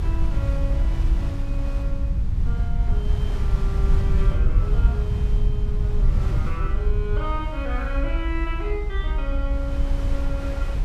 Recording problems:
rumble; below 68 Hz, SNR -10 dB
wind noise; below 1.5 kHz, SNR 8 dB

